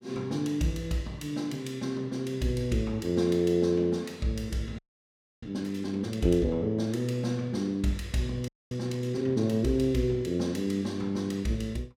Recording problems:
frozen audio; at 5 s for 0.5 s and at 8.5 s

